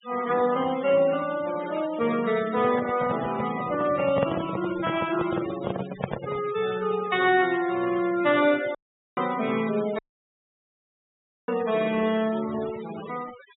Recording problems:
treble missing; nothing above 4 kHz
denoising artefacts; signal-to-artefact ratio 15 dB
handling noise; from 2.5 to 6.5 s; peak +2 dB vs average level
audio cutting out; at 9 s and at 10 s for 1.5 s

